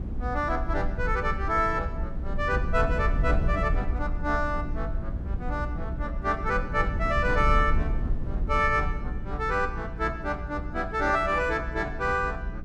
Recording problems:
hum; 60 Hz, harmonics up to 360 Hz, SNR 11 dB
wind on the microphone; below 78 Hz, SNR 5 dB

